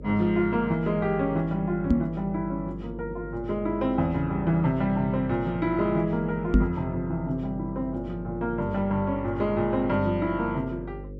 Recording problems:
electrical hum; 50 Hz, harmonics up to 550 Hz, SNR 13 dB
knock on the microphone; at 2 s and at 6.5 s; peak +9 dB vs average level

